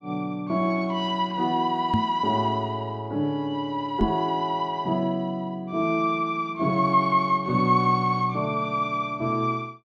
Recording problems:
microphone thump; at 2 s and at 4 s; peak +4 dB vs average level

